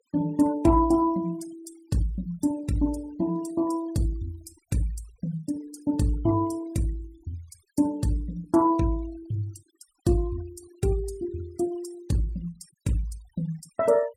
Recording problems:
noise reduction artefacts; signal-to-artefact ratio 23 dB

